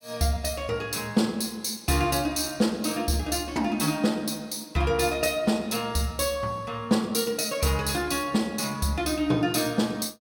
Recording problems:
none

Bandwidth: 17 kHz